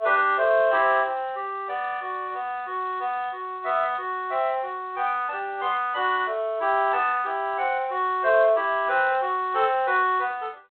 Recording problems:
phone line; 320 Hz to 3.6 kHz, G.726

